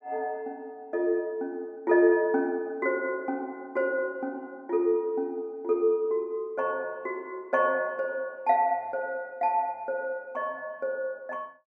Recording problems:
none

